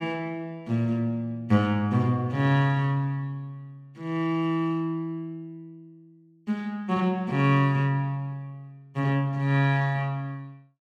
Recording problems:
none

